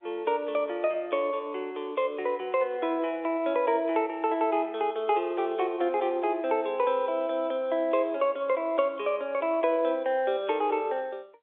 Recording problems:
phone line; 300 Hz to 3.6 kHz, G.711

